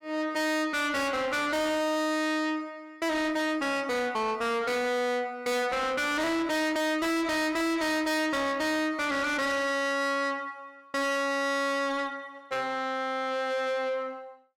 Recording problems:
distorted audio; soft clipping, signal-to-distortion ratio 6 dB

